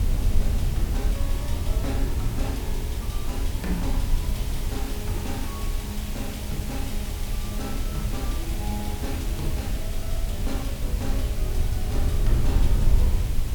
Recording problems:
hiss; slope -2 dB per octave, SNR 3 dB
wind on the microphone; below 74 Hz, SNR -7 dB

